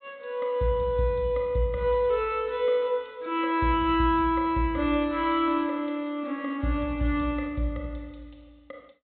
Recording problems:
treble cut off; nothing above 4 kHz

